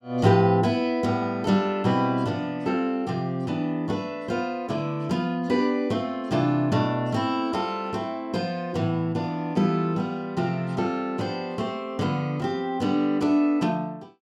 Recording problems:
none

